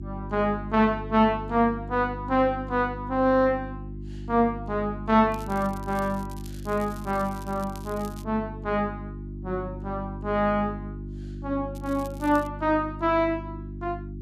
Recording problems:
hum; 50 Hz, harmonics up to 350 Hz, SNR 11 dB
crackle; from 5.5 to 8 s and at 12 s; loose cable, SNR 23 dB

